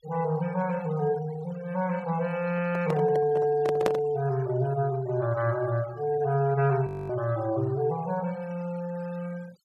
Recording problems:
denoising artefacts; signal-to-artefact ratio 20 dB
microphone handling noise; from 2.5 to 4 s; peak +5 dB vs average level
audio freezing; at 7 s

